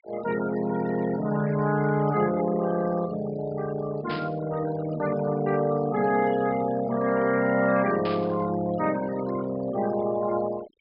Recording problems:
low-pass filter; nothing above 5.5 kHz
denoising artefacts; signal-to-artefact ratio 15 dB
burst of static; at 4 s and at 8 s; peak -7 dB vs average level

